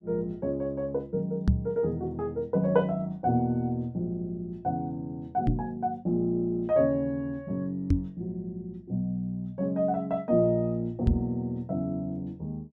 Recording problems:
knock on the microphone; 4 times, first at 1.5 s; peak +9 dB vs average level

